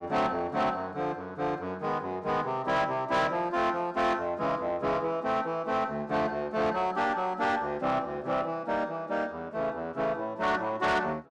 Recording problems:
distorted audio; soft clipping, signal-to-distortion ratio 11 dB

